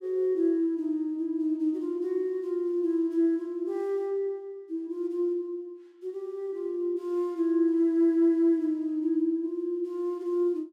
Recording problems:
none

